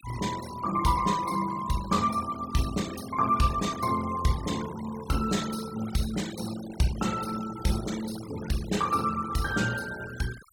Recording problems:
noise reduction artefacts; signal-to-artefact ratio 14 dB

